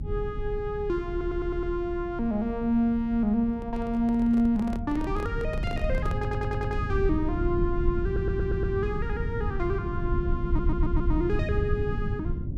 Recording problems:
rumble; below 120 Hz, SNR 3 dB
stutter; 4 times, first at 1 s
handling noise; from 3.5 to 7 s; peak -6 dB vs average level

